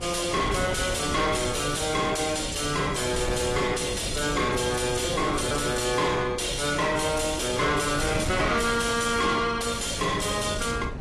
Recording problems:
lossy compression; AAC, log-spectral distance 8 dB, nothing above 12 kHz
distorted audio; soft clipping, signal-to-distortion ratio 7 dB
electrical hum; 60 Hz, harmonics up to 1.4 kHz, SNR 25 dB
wind on the microphone; below 540 Hz, SNR 10 dB

